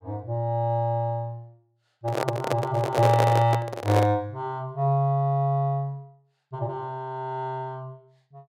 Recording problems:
handling noise; from 2 to 4 s; peak +4 dB vs average level

